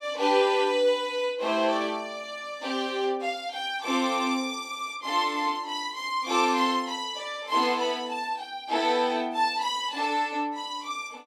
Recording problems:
none

